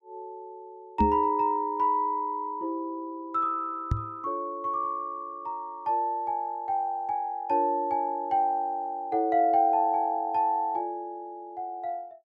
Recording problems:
microphone bump; at 1 s and at 4 s; peak +5 dB vs average level

